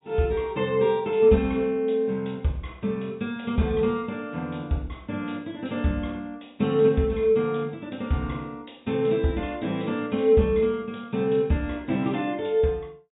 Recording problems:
treble cut off; nothing above 4 kHz

